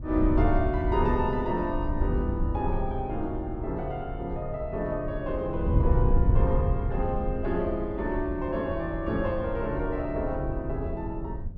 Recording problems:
wind noise; below 94 Hz, SNR 2 dB

